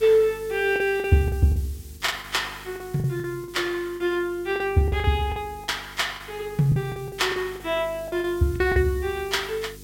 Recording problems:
mains hum; 50 Hz, harmonics up to 450 Hz, SNR 22 dB
hiss; slope +4 dB per octave, SNR 22 dB
packet loss; 11% of the sound replaced, filled with the last packet

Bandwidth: 16.5 kHz